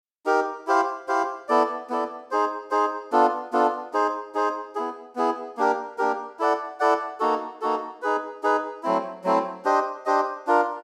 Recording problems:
none

